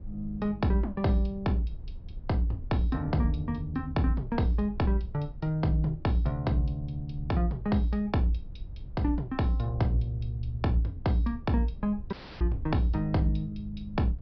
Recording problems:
treble cut off; nothing above 5.5 kHz
low-frequency rumble; below 80 Hz, SNR 15 dB
dropout; at 12 s

